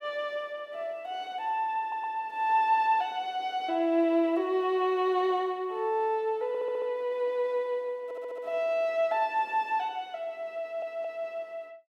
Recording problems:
audio stuttering; 4 times, first at 2 s

